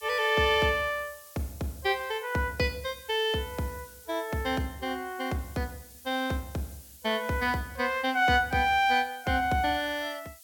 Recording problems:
hiss; SNR 21 dB

